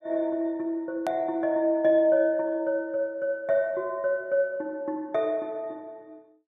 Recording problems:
edit click; at 1 s

